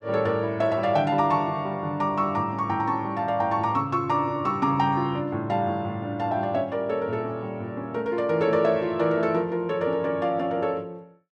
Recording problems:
none

